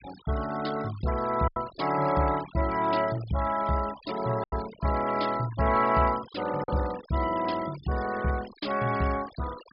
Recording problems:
low-pass filter; nothing above 5.5 kHz
noise reduction artefacts; signal-to-artefact ratio 15 dB
lost packets; 2% of the sound replaced, filled with silence

